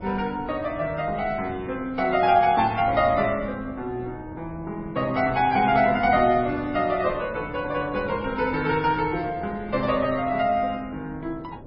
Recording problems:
lossy codec; MP3, log-spectral distance 2 dB, nothing above 4.5 kHz
wind on the microphone; below 410 Hz, SNR 17 dB

